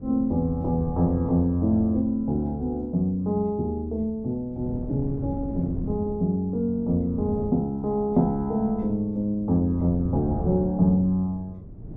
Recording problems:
wind noise; below 220 Hz, SNR 12 dB

